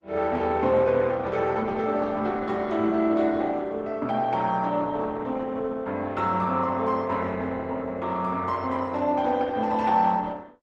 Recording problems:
lossy codec; Opus, log-spectral distance 3 dB

